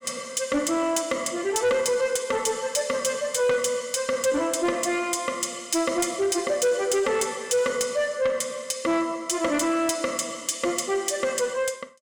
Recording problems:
distortion; soft clipping, signal-to-distortion ratio 11 dB

